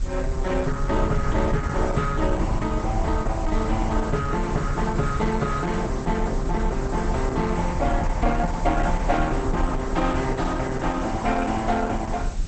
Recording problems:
codec artefacts; Opus, log-spectral distance 8 dB, nothing above 7.8 kHz
background hiss; SNR 17 dB
low-frequency rumble; below 72 Hz, strongest tone 34 Hz, SNR 4 dB

